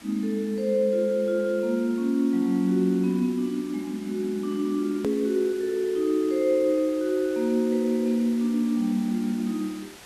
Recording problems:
background hiss; slope -1 dB per octave, SNR 21 dB
hard cut with a click; at 5 s

